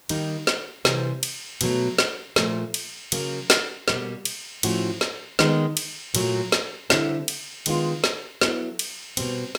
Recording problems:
background hiss; slope -2 dB per octave, SNR 29 dB

